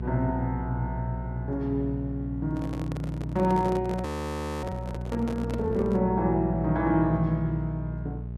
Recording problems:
mains hum; 60 Hz, harmonics up to 480 Hz, SNR 6 dB
handling noise; from 2.5 to 6 s; peak -3 dB vs average level
frozen audio; at 4 s for 0.5 s

